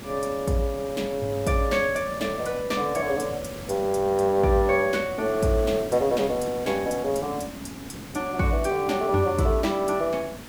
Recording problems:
hiss; slope -4 dB per octave, SNR 14 dB

